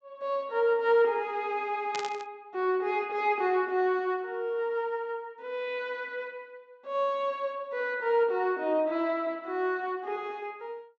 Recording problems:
treble missing; nothing above 8 kHz
burst of static; at 2 s; peak -3 dB vs average level

